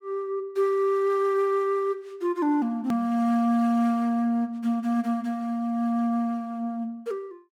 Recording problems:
edit click; at 3 s

